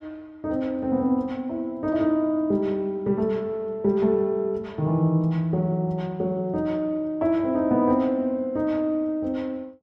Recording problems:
none

